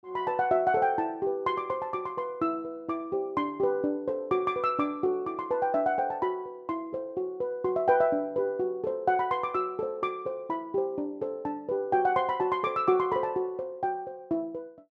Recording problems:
none

